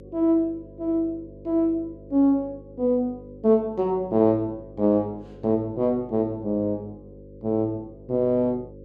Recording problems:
electrical hum; 50 Hz, harmonics up to 550 Hz, SNR 20 dB

